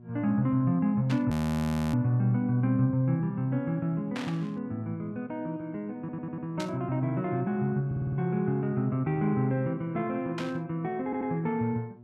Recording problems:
mains hum; 60 Hz, harmonics up to 720 Hz, SNR 23 dB
burst of static; 4 times, first at 1 s; peak -5 dB vs average level
frozen audio; at 1.5 s for 0.5 s
audio stuttering; at 6 s, at 8 s and at 11 s

